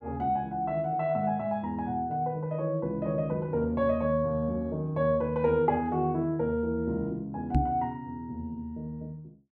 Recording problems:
knock on the microphone; at 7.5 s; peak +7 dB vs average level

